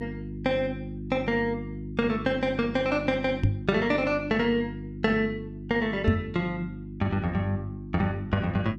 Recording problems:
hum; 50 Hz, harmonics up to 350 Hz, SNR 10 dB
knock on the microphone; at 3.5 s and at 6 s; peak +8 dB vs average level

